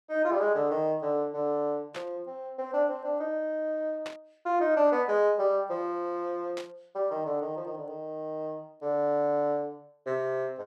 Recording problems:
burst of static; at 2 s, at 4 s and at 6.5 s; peak -7 dB vs average level

